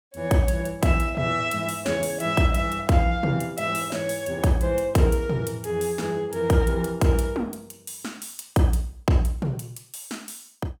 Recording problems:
none

